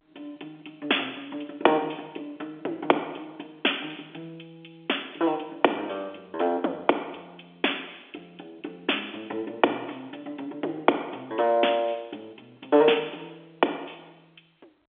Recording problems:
telephone audio; 260 Hz to 3.5 kHz, G.711

